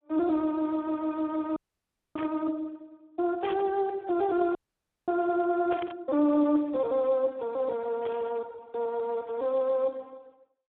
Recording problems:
phone line; 260 Hz to 2.3 kHz, Speex
audio freezing; at 1.5 s for 0.5 s and at 4.5 s for 0.5 s
static burst; 4 times, first at 2 s; peak -7 dB vs average level

